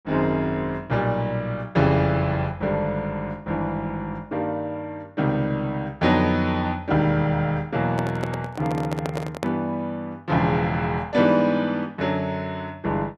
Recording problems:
microphone handling noise; from 8 to 9.5 s; peak -1 dB vs average level

